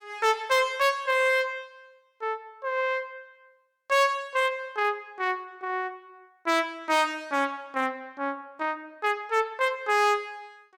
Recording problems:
distortion; hard clipping, signal-to-distortion ratio 10 dB

